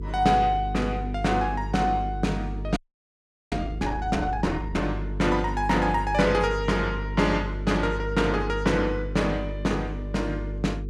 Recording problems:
hum; 50 Hz, harmonics up to 450 Hz, SNR 7 dB
frozen audio; at 3 s for 1 s

